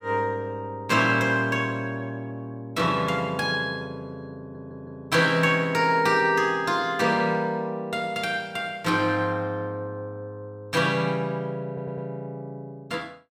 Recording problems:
audio stuttering; at 4.5 s and at 12 s

